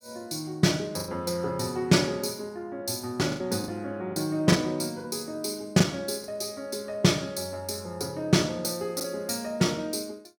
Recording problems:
packet loss; 4% of the sound replaced, filled with the last packet

